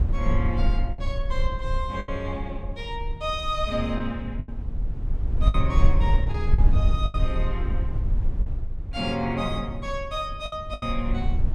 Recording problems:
low-frequency rumble; below 66 Hz, SNR -3 dB
packet loss; 6% of the sound replaced, filled with the last packet

